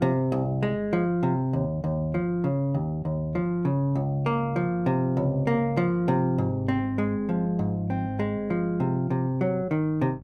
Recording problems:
hum; 50 Hz, harmonics up to 600 Hz, SNR 22 dB

